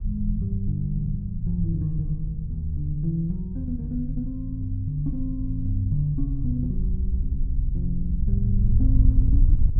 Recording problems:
treble missing; nothing above 3.7 kHz
wind on the microphone; below 64 Hz, SNR 1 dB

